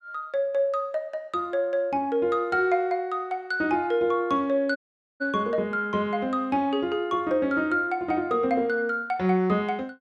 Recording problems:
audio cutting out; at 5 s

